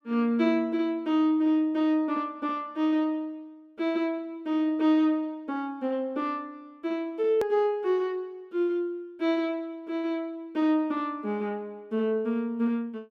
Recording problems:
click at an edit; at 7.5 s

